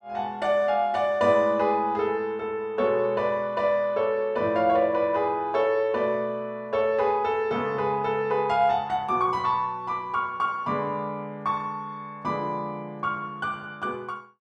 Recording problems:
none

